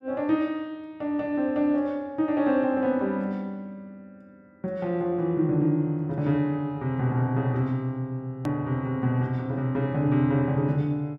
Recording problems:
edit click; at 8.5 s

